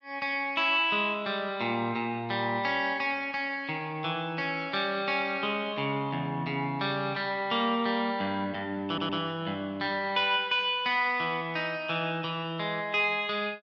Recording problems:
audio stuttering; at 9 s

